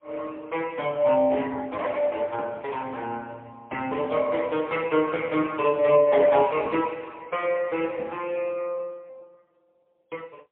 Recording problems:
telephone audio; 280 Hz to 3.2 kHz, AMR-NB, then MP3

